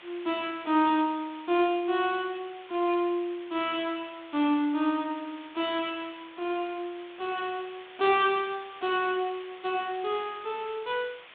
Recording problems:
telephone audio; 170 Hz to 3.6 kHz, G.726
hiss; SNR 20 dB

